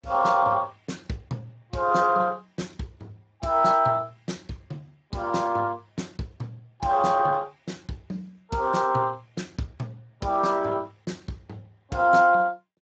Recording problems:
lossy compression; Speex, log-spectral distance 3 dB, nothing above 7.3 kHz

